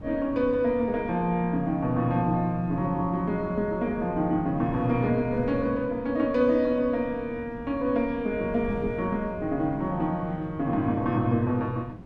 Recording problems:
wind noise; below 230 Hz, SNR 16 dB

